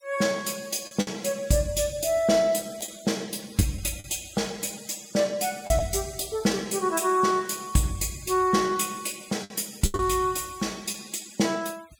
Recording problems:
noise reduction artefacts; signal-to-artefact ratio 22 dB
lost packets; 4% of the sound replaced, filled with the last packet

